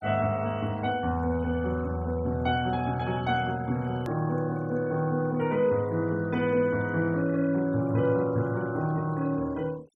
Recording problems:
denoising artefacts; signal-to-artefact ratio 24 dB
hard cut with a click; at 4 s

